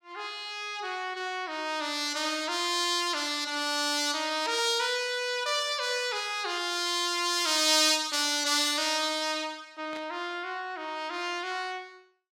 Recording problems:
static burst; at 10 s; peak -12 dB vs average level

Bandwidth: 16.5 kHz